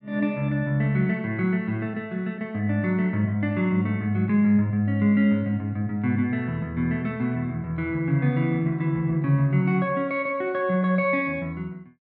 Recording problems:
none

